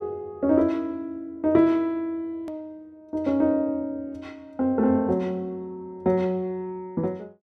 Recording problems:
hard cut with a click; at 2.5 s

